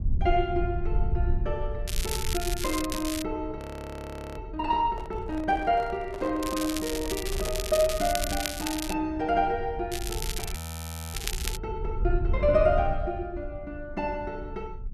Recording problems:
low-frequency rumble; below 74 Hz, SNR 6 dB
crackling; from 2 to 3 s, from 6.5 to 9 s and from 10 to 12 s; loose cable, SNR 5 dB
frozen audio; at 3.5 s for 1 s and at 11 s for 0.5 s
microphone handling noise; from 5 to 8 s; peak -7 dB vs average level

